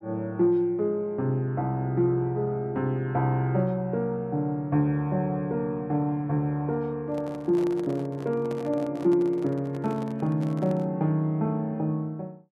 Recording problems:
microphone handling noise; from 7 to 11 s; peak -9 dB vs average level

